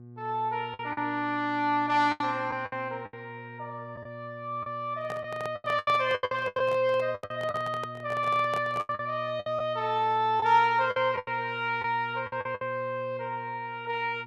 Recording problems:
hum; 60 Hz, harmonics up to 720 Hz, SNR 18 dB
lost packets; 10% of the sound replaced, filled with the last packet
microphone handling noise; from 5 to 9 s; peak -5 dB vs average level

